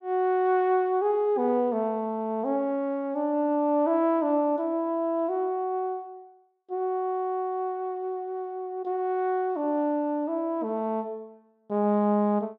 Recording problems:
none

